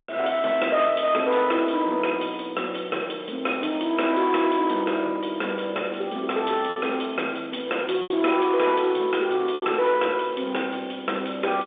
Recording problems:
phone line; 280 Hz to 3.6 kHz, G.711
distortion; hard clipping, uneven, signal-to-distortion ratio 13 dB
lost packets; 1.9% of the sound replaced, filled with repeated pitch periods

